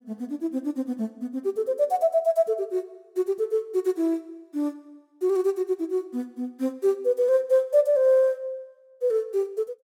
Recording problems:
none

